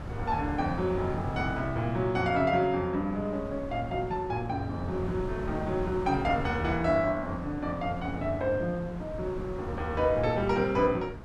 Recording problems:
wind noise; below 350 Hz, SNR 10 dB

